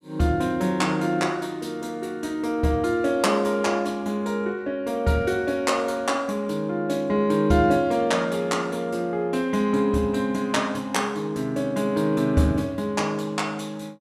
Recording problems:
none

